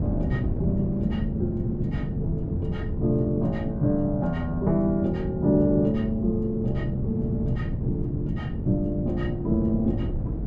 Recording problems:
wind noise; below 200 Hz, SNR 4 dB

